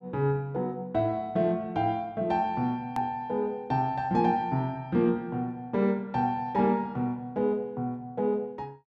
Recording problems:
hard cut with a click; at 3 s

